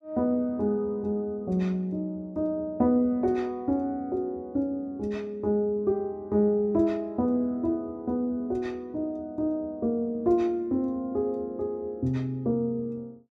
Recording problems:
none

